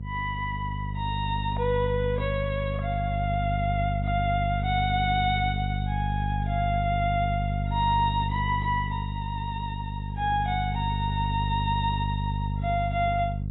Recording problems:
lossy compression; AAC, log-spectral distance 2 dB, nothing above 3.7 kHz
hum; 50 Hz, harmonics up to 300 Hz, SNR 2 dB

